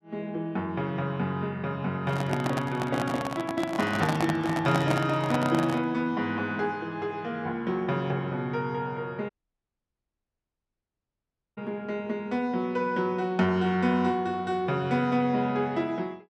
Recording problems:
microphone handling noise; from 2 to 6 s; peak +3 dB vs average level
audio cutting out; at 9.5 s for 2.5 s

